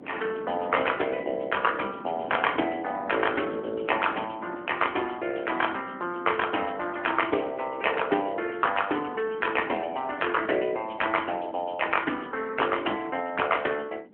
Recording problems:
telephone audio; 240 Hz to 3.2 kHz, AMR-NB
wind on the microphone; below 430 Hz, SNR 17 dB

